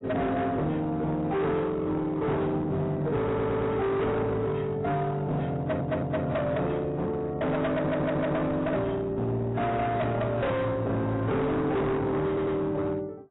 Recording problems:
lossy codec; AAC, log-spectral distance 2 dB, nothing above 3.8 kHz
distorted audio; hard clipping, signal-to-distortion ratio 7 dB
audio stuttering; 4 times, first at 3 s

